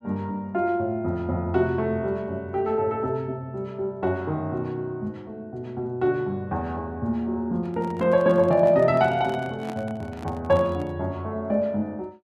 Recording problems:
handling noise; from 7.5 to 11 s; peak -8 dB vs average level

